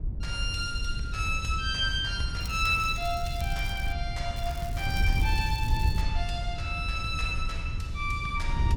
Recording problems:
wind noise; below 88 Hz, SNR 2 dB
crackling; from 2.5 to 4 s and from 4.5 to 6 s; loose cable, SNR 17 dB

